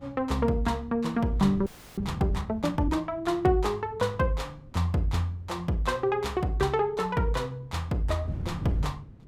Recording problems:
wind noise; below 180 Hz, SNR 15 dB
audio freezing; at 1.5 s

